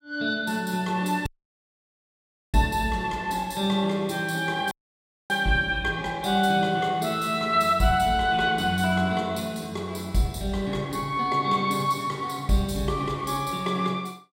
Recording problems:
dropout; at 1.5 s for 1.5 s and at 4.5 s for 0.5 s

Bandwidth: 16 kHz